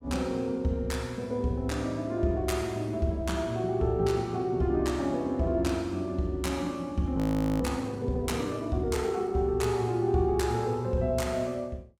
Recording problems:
frozen audio; at 7 s

